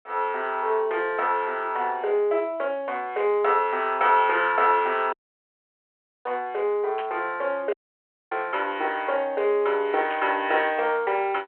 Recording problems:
phone line; 340 Hz to 3.3 kHz, G.726
audio cutting out; at 5 s for 1 s and at 7.5 s for 0.5 s
static burst; at 7 s and at 10 s; peak -9 dB vs average level

